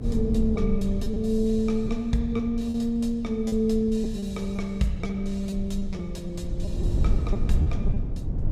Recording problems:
low-frequency rumble; below 94 Hz, strongest tone 22 Hz, SNR 4 dB
lost packets; 7% of the sound replaced, filled with repeated pitch periods

